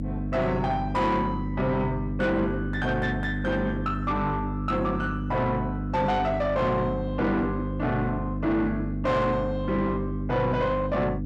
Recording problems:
distortion; soft clipping, signal-to-distortion ratio 12 dB
electrical hum; 50 Hz, harmonics up to 500 Hz, SNR 4 dB

